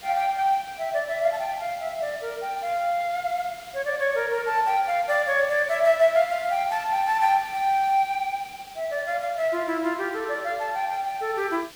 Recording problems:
hiss; slope 0 dB per octave, SNR 20 dB

